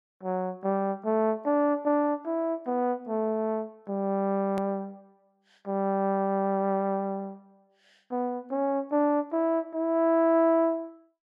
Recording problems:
hard cut with a click; at 4.5 s

